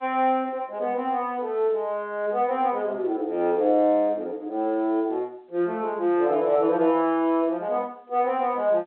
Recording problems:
phone line; 300 Hz to 3.4 kHz, G.711

